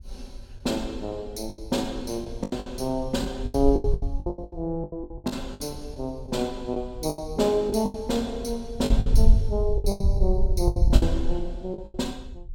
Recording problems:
wind on the microphone; below 60 Hz, SNR -2 dB
lost packets; 15% of the sound replaced, filled with the last packet

